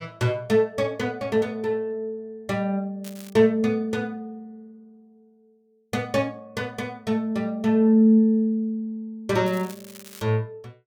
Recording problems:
crackle; at 3 s and at 9.5 s; loose cable, SNR 21 dB

